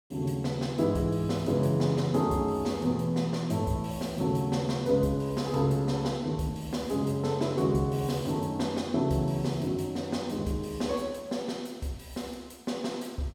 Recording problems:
none

